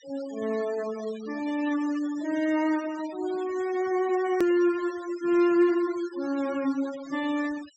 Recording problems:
treble cut off; nothing above 8 kHz
noise reduction artefacts; signal-to-artefact ratio 18 dB
edit click; at 4.5 s

